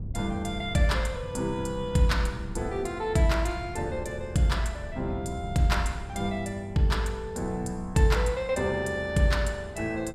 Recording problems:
wind noise; below 140 Hz, SNR 13 dB

